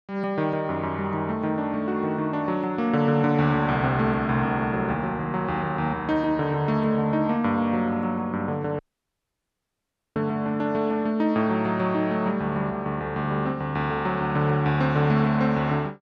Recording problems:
audio cutting out; at 9 s for 1.5 s

